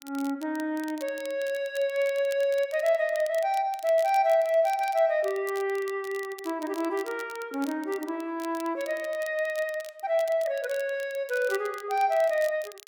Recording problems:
crackle; vinyl, SNR 20 dB

